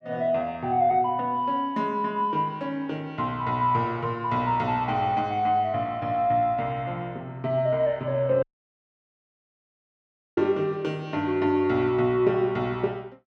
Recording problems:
dropout; at 8.5 s for 2 s

